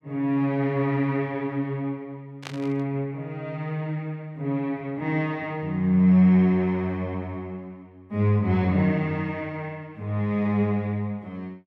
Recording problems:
burst of static; at 2.5 s; peak -6 dB vs average level

